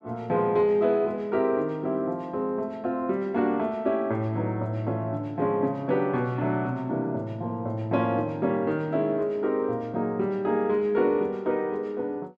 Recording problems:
none

